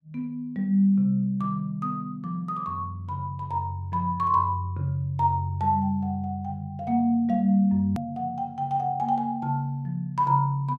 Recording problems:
hard cut with a click; at 8 s

